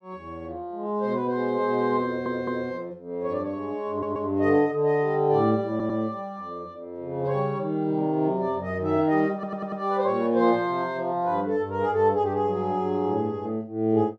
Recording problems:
stutter; 4 times, first at 2 s

